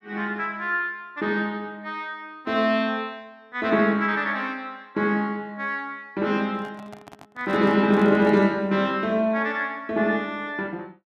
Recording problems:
handling noise; from 6.5 to 8.5 s; peak -12 dB vs average level

